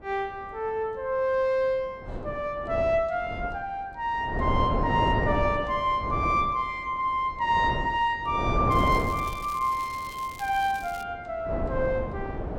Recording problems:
wind on the microphone; below 530 Hz, SNR 5 dB
crackle; from 8.5 to 11 s; loose cable, SNR 19 dB

